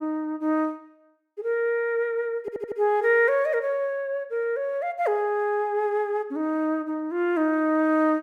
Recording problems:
audio stuttering; at 2.5 s

